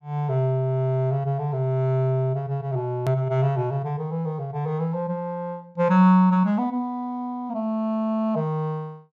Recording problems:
treble missing; nothing above 7.6 kHz
edit click; at 3 s

